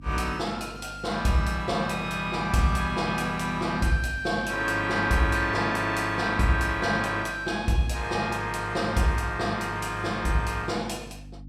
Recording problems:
mains hum; 50 Hz, harmonics up to 300 Hz, SNR 18 dB

